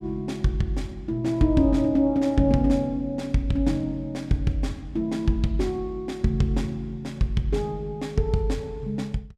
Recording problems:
none

